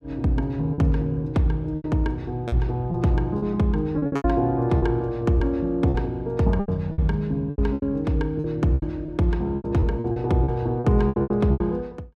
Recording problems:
packet loss; 12% of the sound replaced, filled with repeated pitch periods

